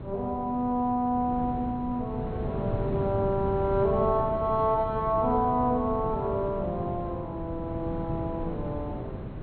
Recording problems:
low-pass filter; nothing above 4.2 kHz
wind noise; below 270 Hz, SNR 7 dB

